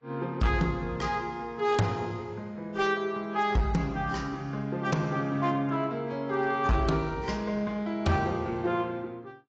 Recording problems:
lossy compression; AAC, log-spectral distance 2 dB
distortion; hard clipping, signal-to-distortion ratio 12 dB

